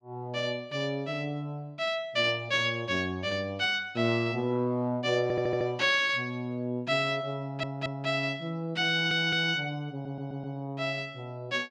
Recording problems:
stutter; 4 times, first at 5 s

